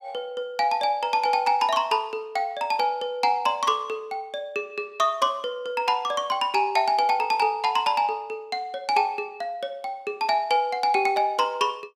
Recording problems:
none

